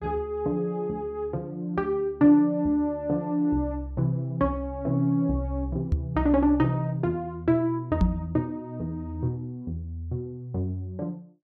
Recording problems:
knock on the microphone; at 6 s and at 8 s; peak +7 dB vs average level

